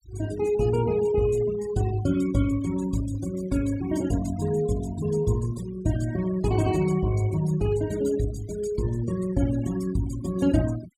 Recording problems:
denoising artefacts; signal-to-artefact ratio 16 dB

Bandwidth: 16.5 kHz